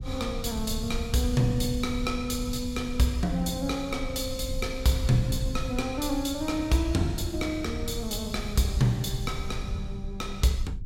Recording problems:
low-frequency rumble; below 94 Hz, SNR 8 dB

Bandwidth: 16 kHz